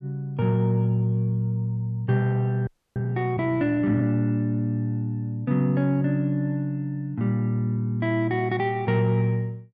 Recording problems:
audio freezing; at 2.5 s

